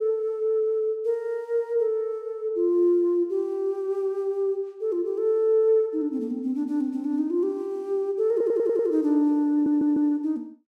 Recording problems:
stutter; at 8.5 s and at 9.5 s

